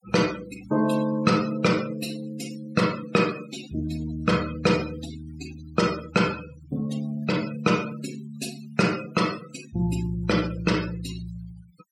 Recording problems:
noise reduction artefacts; signal-to-artefact ratio 15 dB

